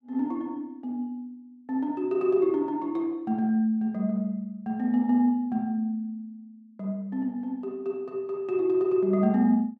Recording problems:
none

